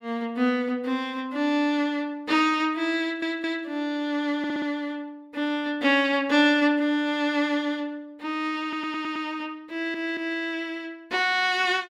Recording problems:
audio stuttering; 4 times, first at 3 s

